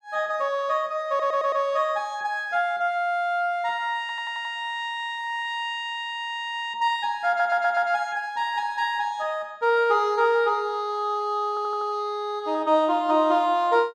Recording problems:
stutter; 4 times, first at 1 s

